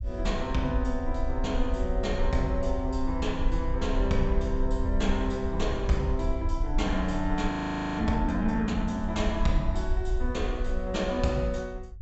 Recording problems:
treble cut off; nothing above 7.8 kHz
low-frequency rumble; below 58 Hz, SNR 4 dB
frozen audio; at 7.5 s

